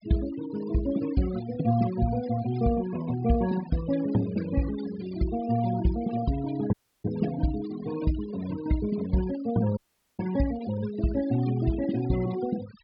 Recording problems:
low-pass filter; nothing above 5.5 kHz
noise reduction artefacts; signal-to-artefact ratio 14 dB
audio cutting out; at 6.5 s and at 10 s

